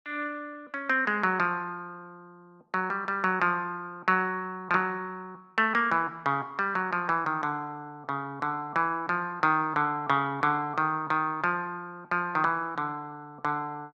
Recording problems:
lossy codec; Opus, log-spectral distance 2 dB

